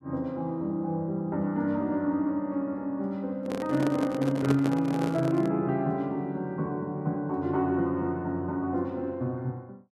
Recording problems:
microphone handling noise; from 3.5 to 5.5 s; peak +3 dB vs average level

